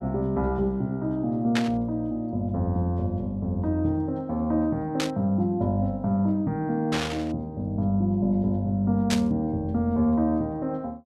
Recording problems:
static burst; 4 times, first at 1.5 s; peak +2 dB vs average level

